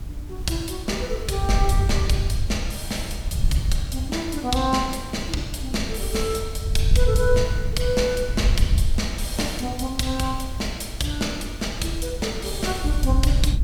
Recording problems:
hum; 60 Hz, harmonics up to 1.1 kHz, SNR 24 dB
hiss; slope -4 dB per octave, SNR 20 dB
wind noise; below 76 Hz, SNR 1 dB

